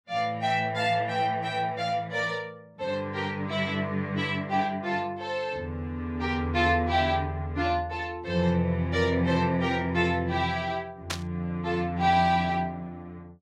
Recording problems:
burst of static; at 11 s; peak +1 dB vs average level

